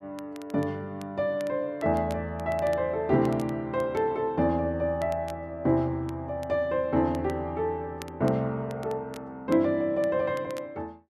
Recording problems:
crackle; vinyl, SNR 24 dB

